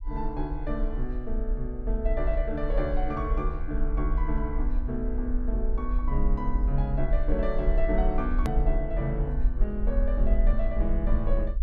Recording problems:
rumble; below 46 Hz, SNR -2 dB
hard cut with a click; at 8.5 s

